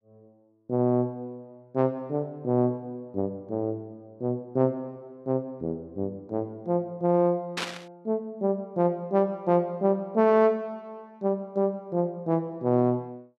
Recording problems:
burst of static; at 7.5 s; peak 0 dB vs average level

